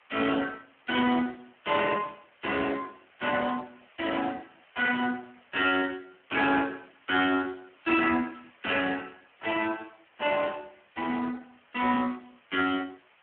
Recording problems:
telephone audio; 220 Hz to 3.2 kHz, Speex
hiss; SNR 30 dB

